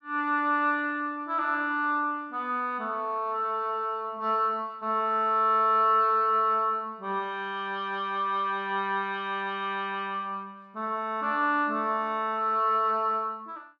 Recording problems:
none

